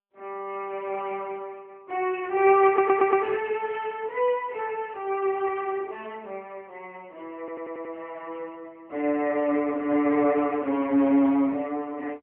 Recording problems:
telephone audio; 220 Hz to 3.1 kHz, AMR-NB
stutter; at 2.5 s and at 7.5 s

